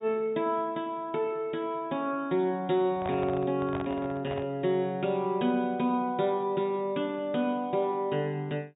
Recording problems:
treble missing; nothing above 4 kHz
microphone handling noise; from 3 to 4.5 s; peak -3 dB vs average level

